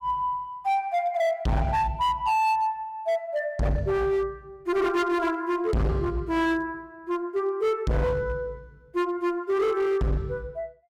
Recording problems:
distorted audio; hard clipping, signal-to-distortion ratio 7 dB

